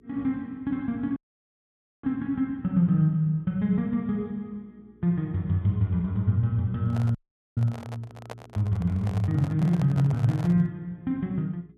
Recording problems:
electrical hum; 60 Hz, harmonics up to 420 Hz, SNR 32 dB
dropout; at 1 s for 1 s and at 7 s
handling noise; from 7 to 11 s; peak -7 dB vs average level

